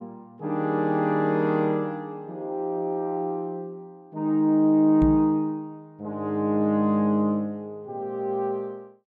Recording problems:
knock on the microphone; at 5 s; peak +3 dB vs average level

